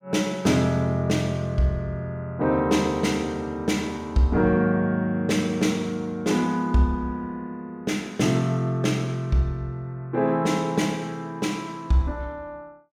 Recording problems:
none

